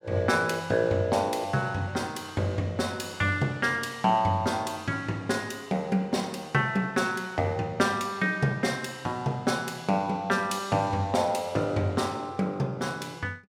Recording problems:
none

